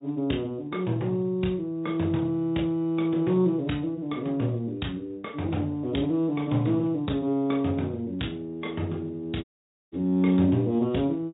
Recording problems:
low-pass filter; nothing above 3.8 kHz
lossy codec; Speex, log-spectral distance 2 dB
dropout; at 9.5 s

